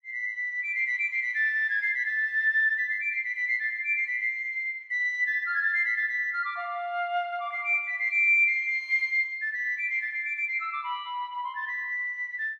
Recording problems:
none

